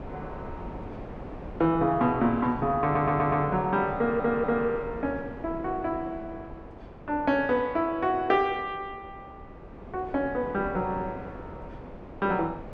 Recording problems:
wind on the microphone; below 570 Hz, SNR 15 dB
stutter; at 3 s and at 4 s

